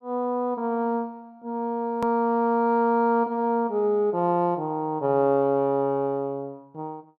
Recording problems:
click at an edit; at 2 s

